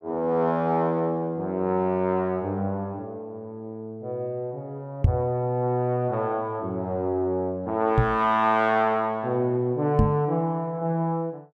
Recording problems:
knock on the microphone; at 5 s, at 8 s and at 10 s; peak +9 dB vs average level

